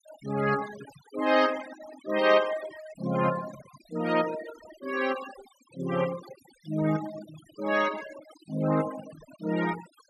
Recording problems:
noise reduction artefacts; signal-to-artefact ratio 13 dB

